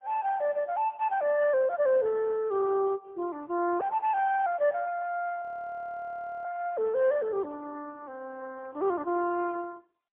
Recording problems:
phone line; 320 Hz to 3.1 kHz, AMR-NB, then MP3
audio freezing; at 5.5 s for 1 s

